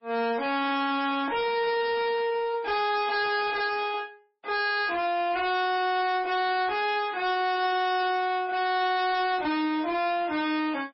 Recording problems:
lossy compression; MP3, log-spectral distance 3 dB, nothing above 5.3 kHz
distorted audio; hard clipping, signal-to-distortion ratio 6 dB

